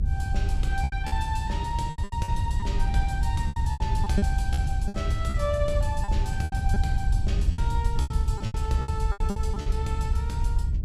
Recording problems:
hum; 60 Hz, harmonics up to 420 Hz, SNR 16 dB
rumble; below 84 Hz, SNR -5 dB
packet loss; 13% of the sound replaced, filled with repeated pitch periods

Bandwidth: 14.5 kHz